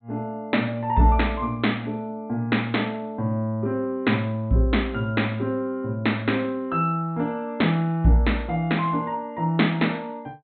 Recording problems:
treble missing; nothing above 4 kHz

